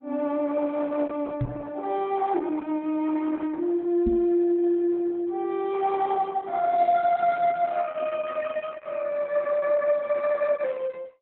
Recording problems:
lossy compression; Opus, log-spectral distance 3 dB, nothing above 3.5 kHz
knock on the microphone; at 1.5 s and at 4 s; peak +1 dB vs average level

